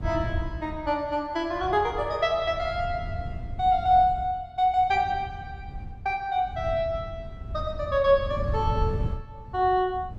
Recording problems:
wind noise; below 120 Hz, SNR 10 dB

